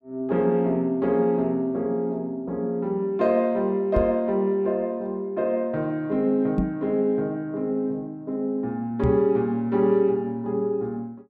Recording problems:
microphone bump; at 4 s, at 6.5 s and at 9 s; peak +3 dB vs average level

